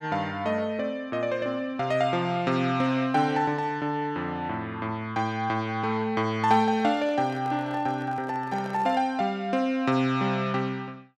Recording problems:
handling noise; from 6.5 to 9 s; peak -12 dB vs average level

